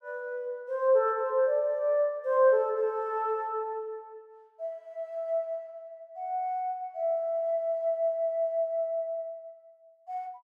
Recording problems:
none

